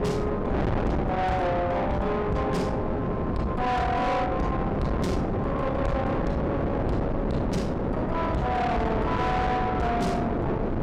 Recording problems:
distortion; soft clipping, signal-to-distortion ratio 7 dB
electrical hum; 50 Hz, harmonics up to 750 Hz, SNR 20 dB
wind noise; below 630 Hz, SNR 0 dB

